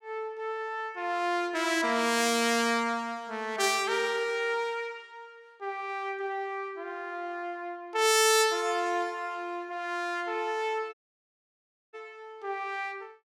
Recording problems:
dropout; at 11 s for 1 s

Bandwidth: 16.5 kHz